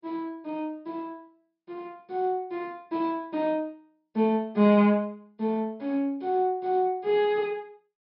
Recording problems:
treble cut off; nothing above 5.5 kHz

